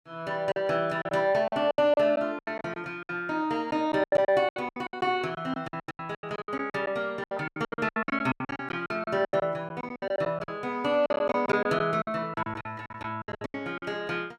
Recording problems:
packet loss; 20% of the sound replaced, filled with silence

